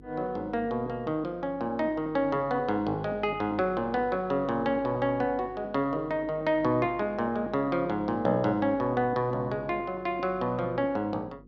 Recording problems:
hum; 50 Hz, harmonics up to 500 Hz, SNR 21 dB

